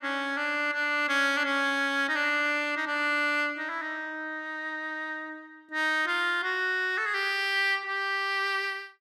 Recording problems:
none

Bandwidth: 15 kHz